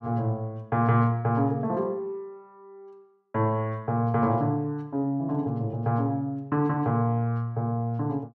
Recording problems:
none

